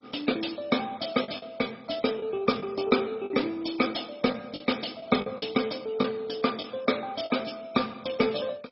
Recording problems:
lossy codec; MP3, then MP2, log-spectral distance 6 dB, nothing above 5.3 kHz
lost packets; 5% of the sound replaced, filled with the last packet

